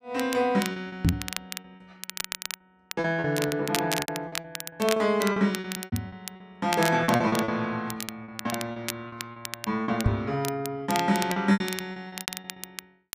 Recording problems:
crackling; vinyl, SNR 9 dB
lost packets; 16% of the sound replaced, filled with repeated pitch periods
microphone thump; at 1 s, at 6 s and at 10 s; peak +8 dB vs average level

